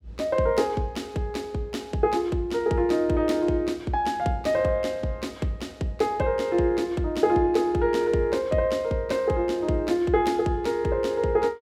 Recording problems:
none

